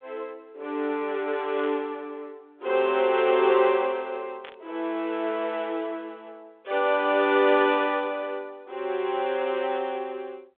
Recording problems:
phone line; 320 Hz to 3.6 kHz, G.726
burst of static; at 1.5 s, at 3 s and at 4.5 s; peak -13 dB vs average level

